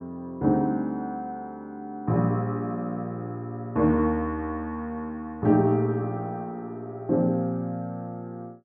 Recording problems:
none

